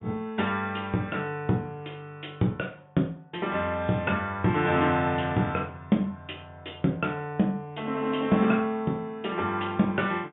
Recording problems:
treble cut off; nothing above 3.7 kHz

